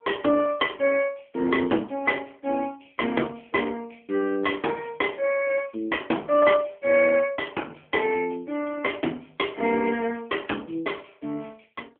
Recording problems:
telephone audio; 240 Hz to 3.2 kHz, AMR-NB

